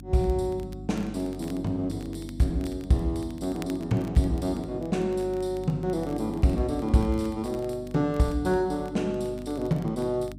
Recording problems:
hum; 50 Hz, harmonics up to 300 Hz, SNR 14 dB
crackle; vinyl, SNR 26 dB

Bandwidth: 15.5 kHz